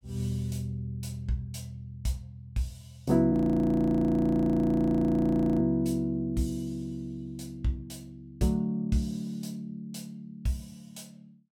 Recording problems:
audio freezing; at 3.5 s for 2.5 s

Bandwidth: 18 kHz